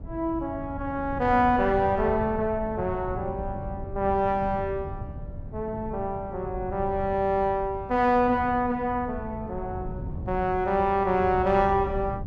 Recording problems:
wind noise; below 150 Hz, SNR 12 dB

